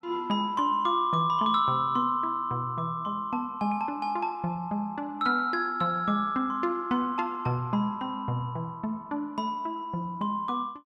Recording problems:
none

